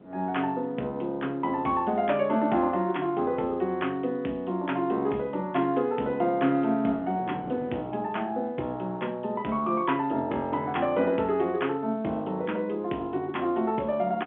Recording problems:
telephone audio; 190 Hz to 3.5 kHz, G.711
wind noise; below 480 Hz, SNR 21 dB

